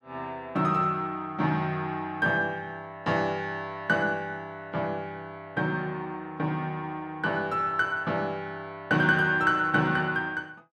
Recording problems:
none

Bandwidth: 13 kHz